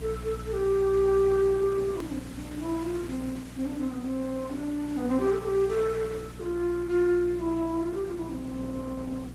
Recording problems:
lossy compression; Vorbis, then Opus, log-spectral distance 4 dB, nothing above 18.3 kHz
hum; 60 Hz, harmonics up to 300 Hz, SNR 13 dB
hiss; slope -3 dB per octave, SNR 20 dB
hard cut with a click; at 2 s

